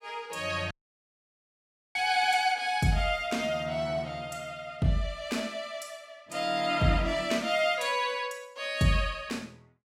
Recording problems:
audio cutting out; at 0.5 s for 1 s

